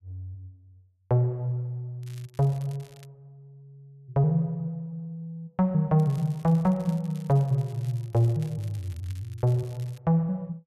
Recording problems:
crackling; from 2 to 3 s and from 6 to 10 s; loose cable, SNR 27 dB

